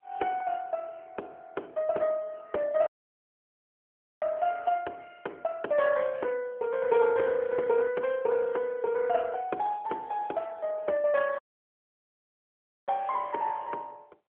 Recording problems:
telephone audio; 340 Hz to 3.4 kHz, AMR-NB
audio cutting out; at 3 s for 1.5 s and at 11 s for 1.5 s

